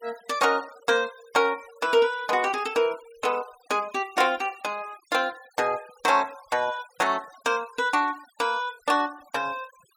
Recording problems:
denoising artefacts; signal-to-artefact ratio 22 dB

